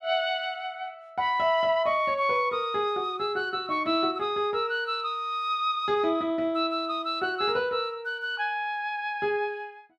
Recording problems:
none

